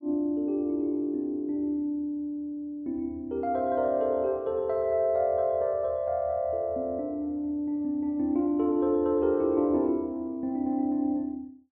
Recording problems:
treble missing; nothing above 5.5 kHz

